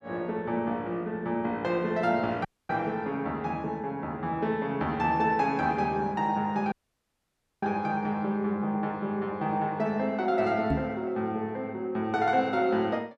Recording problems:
dropout; at 2.5 s and at 6.5 s for 1 s
microphone thump; at 11 s; peak +4 dB vs average level

